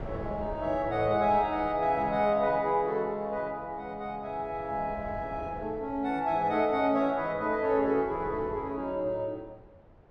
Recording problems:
wind on the microphone; below 550 Hz, SNR 18 dB

